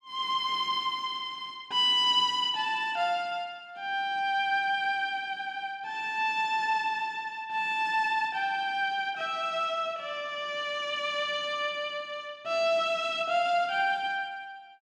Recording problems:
none

